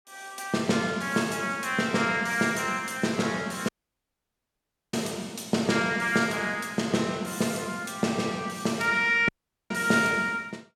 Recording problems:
dropout; at 3.5 s for 1 s and at 9.5 s

